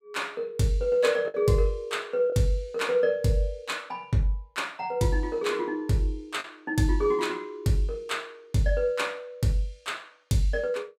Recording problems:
lost packets; 1.2% of the sound replaced, filled with the last packet

